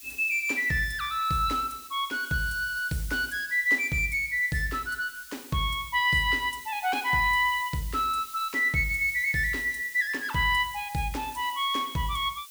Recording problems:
hiss; SNR 17 dB

